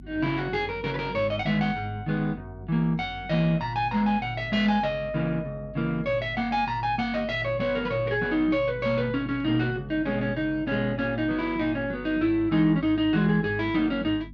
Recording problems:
electrical hum; 50 Hz, harmonics up to 300 Hz, SNR 19 dB

